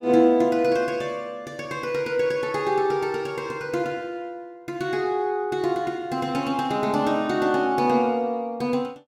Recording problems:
none

